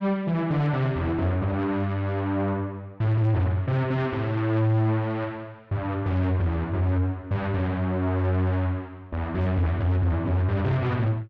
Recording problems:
distortion; soft clipping, signal-to-distortion ratio 10 dB

